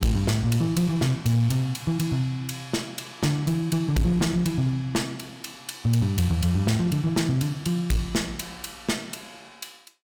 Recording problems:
distorted audio; hard clipping, uneven, signal-to-distortion ratio 11 dB

